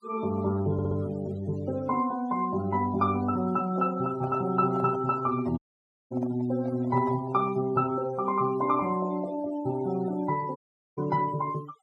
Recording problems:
noise reduction artefacts; signal-to-artefact ratio 20 dB
stutter; at 0.5 s
handling noise; from 3.5 to 7.5 s; peak -8 dB vs average level
dropout; at 5.5 s for 0.5 s and at 11 s

